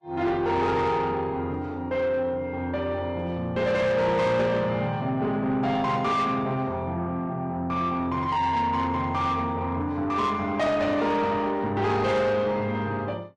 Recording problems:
codec artefacts; Vorbis, log-spectral distance 2 dB
distortion; soft clipping, signal-to-distortion ratio 10 dB

